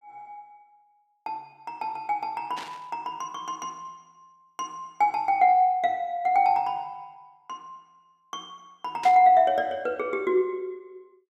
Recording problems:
static burst; at 2.5 s and at 9 s; peak -9 dB vs average level

